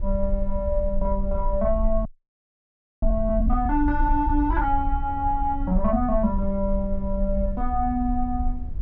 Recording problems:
low-frequency rumble; below 52 Hz, SNR 4 dB
frozen audio; at 2 s for 1 s

